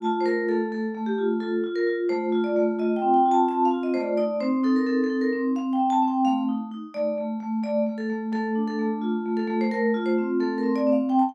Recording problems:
none

